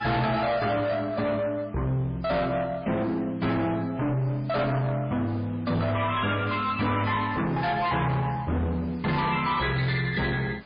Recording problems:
codec artefacts; MP3, log-spectral distance 5 dB, nothing above 4.6 kHz
distortion; soft clipping, signal-to-distortion ratio 8 dB
hiss; SNR 26 dB

